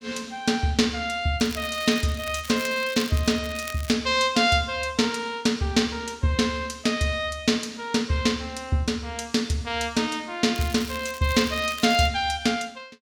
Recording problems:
crackle; from 1.5 to 4 s and from 11 to 12 s; loose cable, SNR 15 dB

